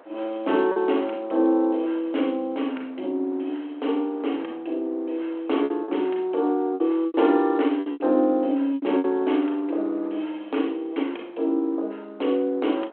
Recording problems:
phone line; 240 Hz to 3.3 kHz, G.726
wind on the microphone; below 1 kHz, SNR 25 dB
packet loss; 5% of the sound replaced, filled with repeated pitch periods

